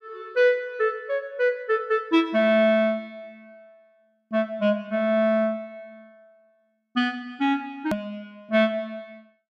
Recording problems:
click at an edit; at 8 s

